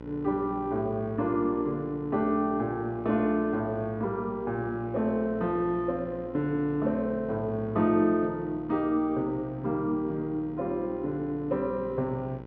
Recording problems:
hum; 60 Hz, harmonics up to 2 kHz, SNR 15 dB

